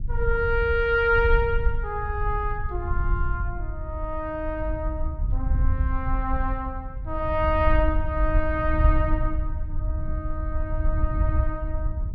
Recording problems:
wind noise; below 72 Hz, SNR 1 dB

